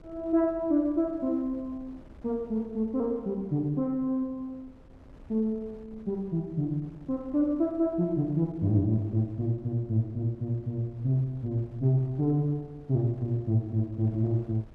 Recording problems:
wind on the microphone; below 300 Hz, SNR 24 dB

